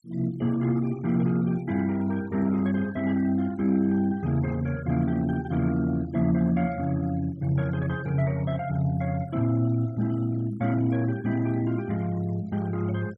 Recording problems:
denoising artefacts; signal-to-artefact ratio 24 dB

